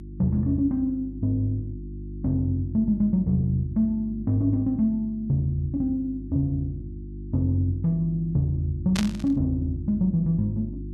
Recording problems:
hum; 50 Hz, harmonics up to 350 Hz, SNR 12 dB
burst of static; at 9 s; peak 0 dB vs average level

